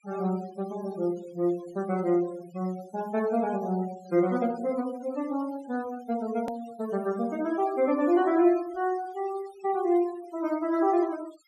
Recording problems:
noise reduction artefacts; signal-to-artefact ratio 21 dB
hard cut with a click; at 6.5 s

